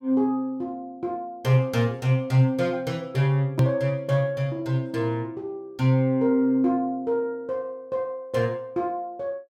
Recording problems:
click at an edit; at 3.5 s

